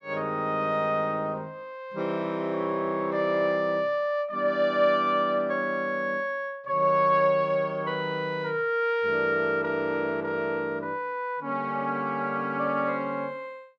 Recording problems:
none

